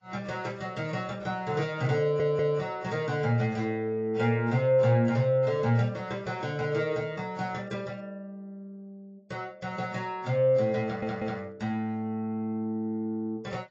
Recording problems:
lossy compression; AAC, log-spectral distance 2 dB
audio stuttering; at 2 s and at 11 s

